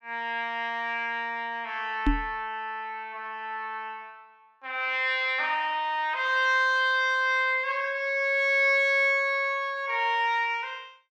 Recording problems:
microphone thump; at 2 s; peak +4 dB vs average level

